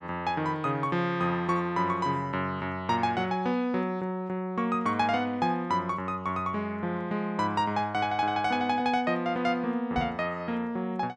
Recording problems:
microphone thump; at 10 s; peak -3 dB vs average level

